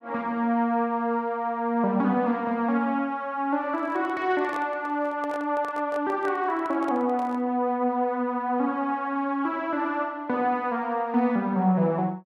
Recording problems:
handling noise; from 3.5 to 7.5 s; peak -8 dB vs average level

